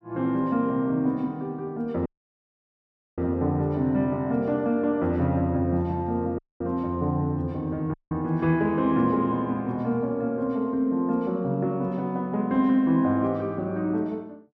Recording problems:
dropout; at 2 s for 1 s, at 6.5 s and at 8 s

